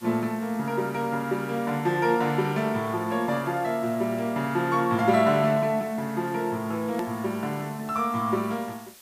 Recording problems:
hiss; slope +1 dB per octave, SNR 22 dB
edit click; at 7 s

